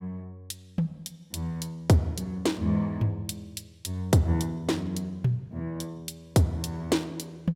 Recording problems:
none

